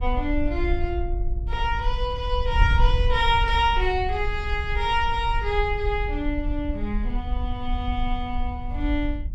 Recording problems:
wind on the microphone; below 62 Hz, SNR 2 dB

